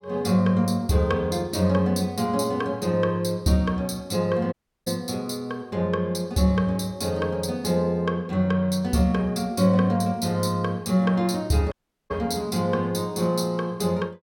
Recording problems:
audio cutting out; at 4.5 s and at 12 s

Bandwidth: 17 kHz